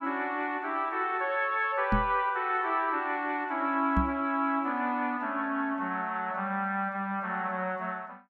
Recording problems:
microphone bump; at 2 s and at 4 s; peak +4 dB vs average level

